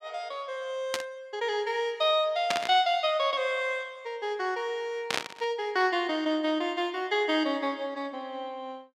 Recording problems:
burst of static; at 1 s, at 2.5 s and at 5 s; peak +4 dB vs average level

